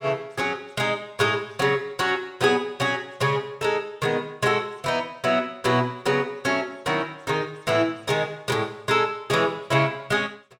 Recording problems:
none

